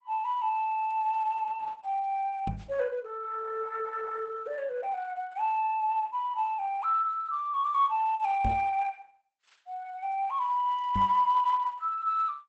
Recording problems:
codec artefacts; Opus, log-spectral distance 2 dB, nothing above 8 kHz
microphone bump; at 2.5 s, at 8.5 s and at 11 s; peak +1 dB vs average level

